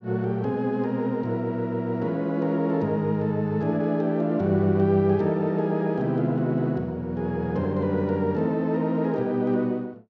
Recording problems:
none

